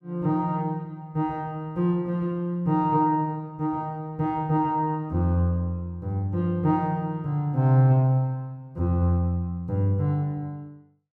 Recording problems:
none

